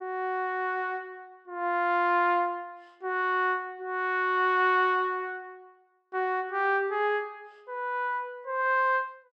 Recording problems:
none

